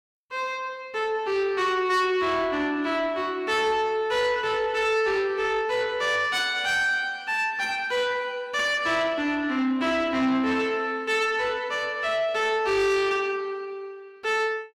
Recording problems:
distorted audio; soft clipping, signal-to-distortion ratio 11 dB

